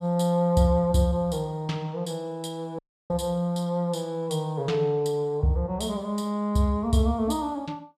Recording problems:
audio cutting out; at 3 s

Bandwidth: 13.5 kHz